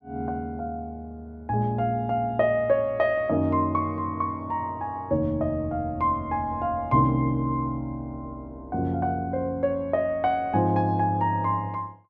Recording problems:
none

